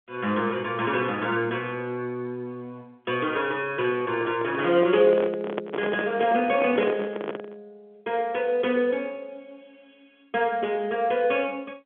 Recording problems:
telephone audio; 150 Hz to 3.5 kHz, G.711
handling noise; from 4 to 7.5 s; peak 0 dB vs average level

